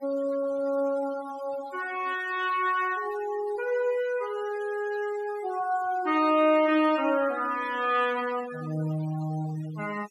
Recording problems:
noise reduction artefacts; signal-to-artefact ratio 18 dB

